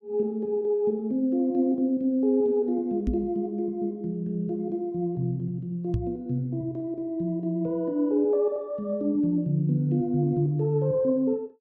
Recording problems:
knock on the microphone; at 3 s and at 6 s; peak +3 dB vs average level

